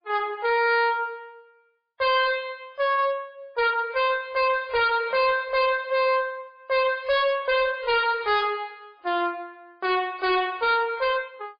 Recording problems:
codec artefacts; MP3, log-spectral distance 2 dB, nothing above 4.6 kHz
distortion; hard clipping, signal-to-distortion ratio 6 dB

